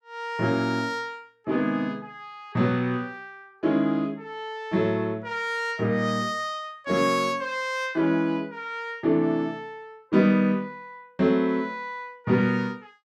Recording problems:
none

